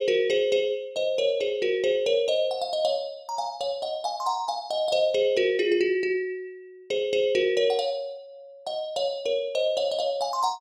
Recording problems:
none

